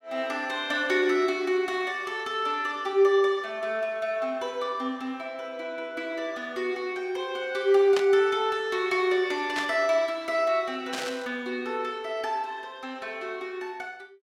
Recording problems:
burst of static; at 8 s, at 9.5 s and at 11 s; peak 0 dB vs average level

